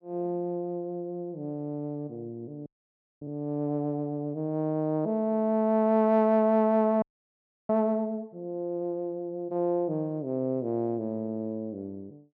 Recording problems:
audio freezing; at 2.5 s for 0.5 s and at 7 s for 0.5 s

